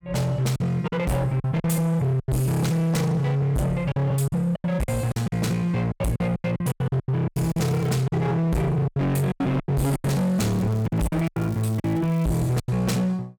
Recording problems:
distorted audio; hard clipping, uneven, signal-to-distortion ratio 6 dB
packet loss; 13% of the sound replaced, filled with silence
crackle; at 7.5 s and from 10 to 13 s; loose cable, SNR 24 dB

